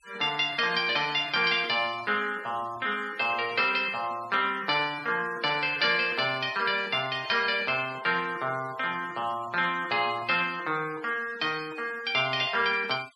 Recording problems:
denoising artefacts; signal-to-artefact ratio 21 dB

